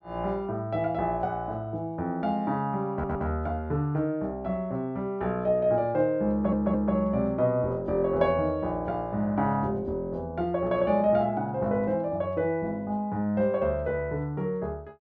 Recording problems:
stutter; at 3 s and at 6.5 s

